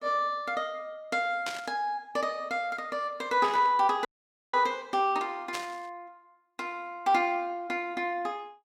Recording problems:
burst of static; at 1.5 s, at 3.5 s and at 5.5 s; peak -2 dB vs average level
audio cutting out; at 4 s

